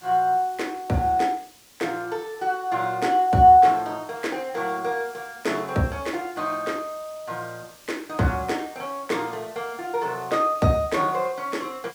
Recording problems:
background hiss; slope 0 dB per octave, SNR 24 dB

